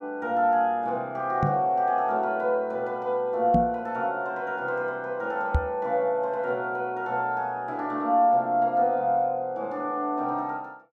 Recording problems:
microphone thump; at 1.5 s, at 3.5 s and at 5.5 s; peak +6 dB vs average level

